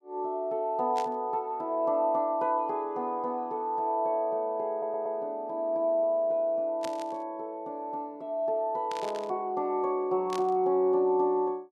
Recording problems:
static burst; 4 times, first at 1 s; peak -8 dB vs average level
stutter; at 4.5 s

